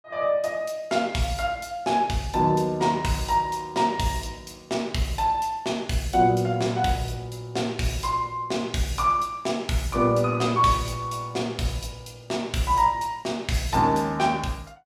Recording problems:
none

